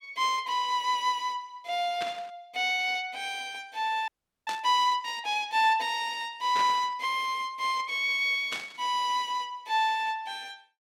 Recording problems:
burst of static; 4 times, first at 2 s; peak -3 dB vs average level
audio freezing; at 4 s

